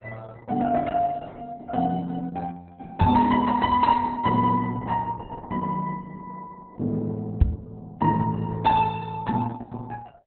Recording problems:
lossy compression; Opus, log-spectral distance 3 dB, nothing above 4 kHz
microphone bump; at 3 s and at 7.5 s; peak +10 dB vs average level

